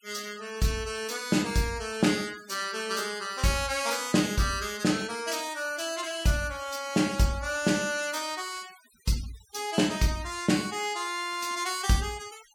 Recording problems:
noise reduction artefacts; signal-to-artefact ratio 17 dB

